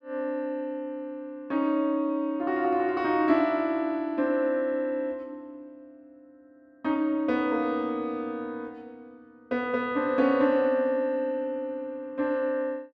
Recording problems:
none

